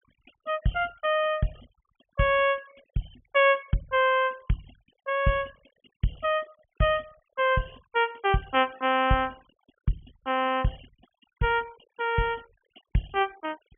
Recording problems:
treble cut off; nothing above 3.3 kHz
denoising artefacts; signal-to-artefact ratio 26 dB

